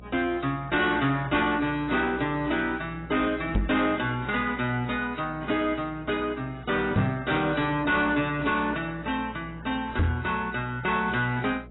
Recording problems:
lossy codec; AAC, log-spectral distance 4 dB, nothing above 3.9 kHz
distortion; soft clipping, signal-to-distortion ratio 10 dB
hum; 60 Hz, harmonics up to 720 Hz, SNR 19 dB
knock on the microphone; at 3.5 s, at 7 s and at 10 s; peak +6 dB vs average level

